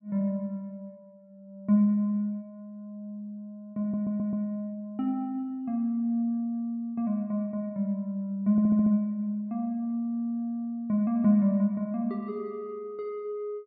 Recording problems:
audio stuttering; at 4 s and at 8.5 s

